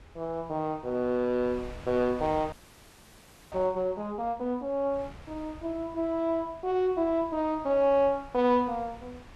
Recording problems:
wind on the microphone; below 890 Hz, SNR 21 dB
frozen audio; at 2.5 s for 1 s

